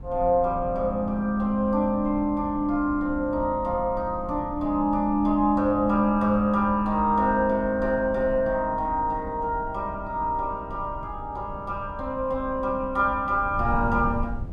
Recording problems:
wind on the microphone; below 120 Hz, SNR 14 dB

